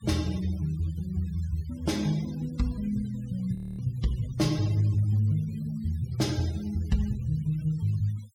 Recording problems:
denoising artefacts; signal-to-artefact ratio 21 dB
audio freezing; at 3.5 s

